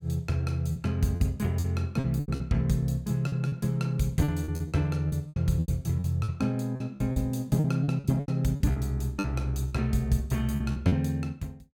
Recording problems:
packet loss; 12% of the sound replaced, filled with repeated pitch periods

